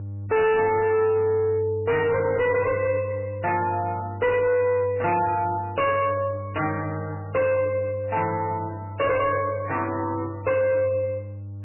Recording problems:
codec artefacts; MP3, log-spectral distance 3 dB, nothing above 2.4 kHz
distortion; hard clipping, signal-to-distortion ratio 7 dB
hum; 50 Hz, harmonics up to 500 Hz, SNR 12 dB

